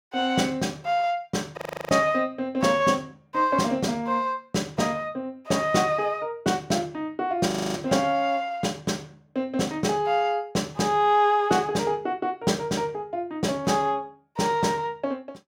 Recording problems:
audio freezing; at 1.5 s and at 7.5 s

